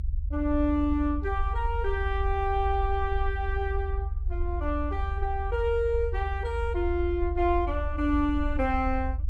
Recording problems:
low-frequency rumble; below 74 Hz, SNR 3 dB

